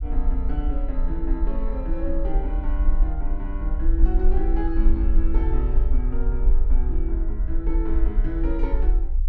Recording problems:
rumble; below 44 Hz, strongest tone 20 Hz, SNR -7 dB

